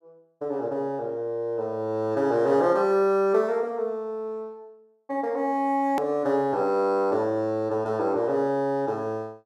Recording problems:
hard cut with a click; at 6 s

